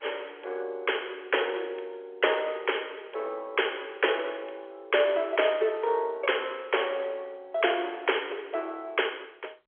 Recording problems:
phone line; 340 Hz to 3.4 kHz, G.711

